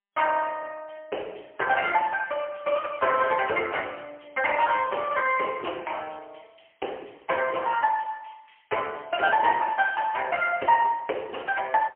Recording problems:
telephone audio; 320 Hz to 3.1 kHz, AMR-NB, then MP3

